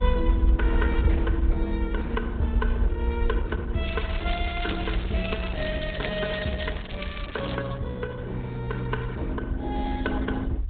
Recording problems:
treble missing; nothing above 3.8 kHz
codec artefacts; Opus, log-spectral distance 2 dB
low-frequency rumble; below 64 Hz, SNR -1 dB
crackle; from 4 to 7.5 s; loose cable, SNR 11 dB

